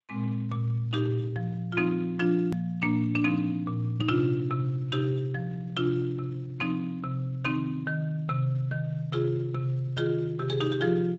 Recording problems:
lossy compression; G.722, then Speex, log-spectral distance 2 dB, nothing above 13.1 kHz
edit click; at 2.5 s

